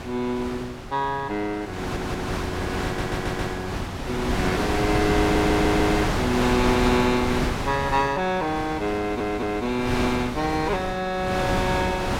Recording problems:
wind noise; below 1.4 kHz, SNR 2 dB
audio stuttering; 4 times, first at 2 s

